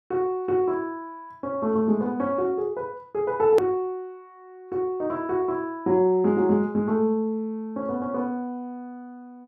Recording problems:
hard cut with a click; at 3.5 s

